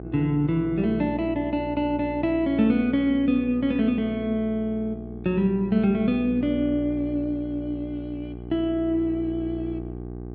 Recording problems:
hum; 60 Hz, harmonics up to 840 Hz, SNR 12 dB

